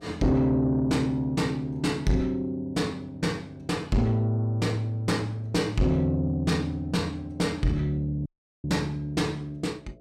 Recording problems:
distorted audio; soft clipping, signal-to-distortion ratio 11 dB
electrical hum; 60 Hz, harmonics up to 660 Hz, SNR 29 dB
audio cutting out; at 8.5 s

